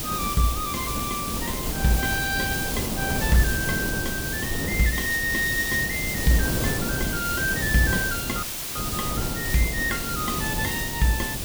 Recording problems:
hiss; slope +5 dB per octave, SNR 3 dB
wind on the microphone; below 390 Hz, SNR 5 dB
dropout; at 8.5 s

